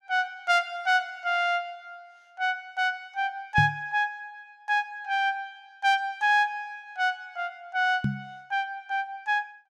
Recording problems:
knock on the microphone; at 3.5 s and at 8 s; peak +4 dB vs average level

